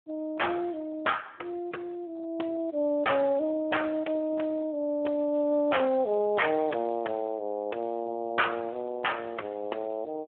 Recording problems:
telephone audio; 280 Hz to 3.2 kHz, Speex

